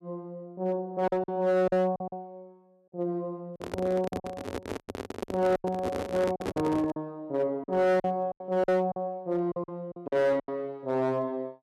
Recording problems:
distortion; hard clipping, signal-to-distortion ratio 12 dB
packet loss; 10% of the sound replaced, filled with silence
handling noise; from 3.5 to 7 s; peak +1 dB vs average level

